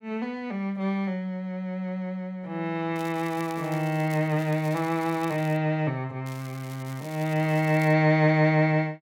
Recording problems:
crackling; from 3 to 5.5 s and from 6.5 to 8 s; loose cable, SNR 21 dB

